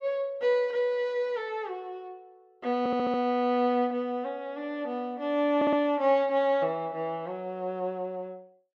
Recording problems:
audio stuttering; at 3 s and at 5.5 s

